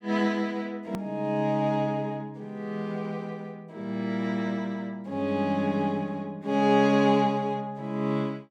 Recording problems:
edit click; at 1 s

